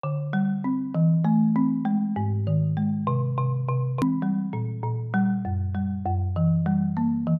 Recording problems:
click at an edit; at 4 s

